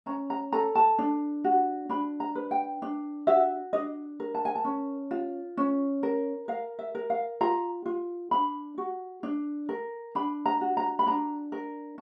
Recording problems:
none

